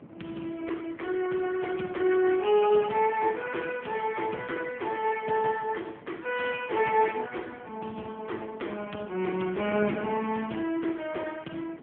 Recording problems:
telephone audio; 170 Hz to 3.3 kHz, AMR-NB
wind on the microphone; below 440 Hz, SNR 18 dB

